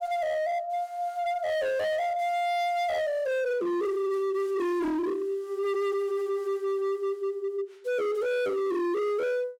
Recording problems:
distorted audio; hard clipping, signal-to-distortion ratio 7 dB

